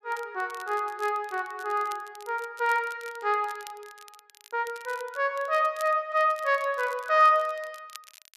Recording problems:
crackling; vinyl, SNR 23 dB

